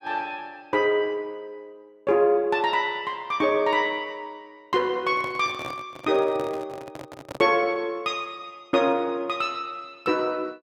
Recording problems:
microphone handling noise; from 5 to 7.5 s; peak -7 dB vs average level

